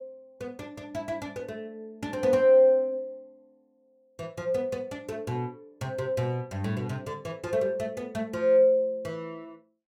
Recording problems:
none

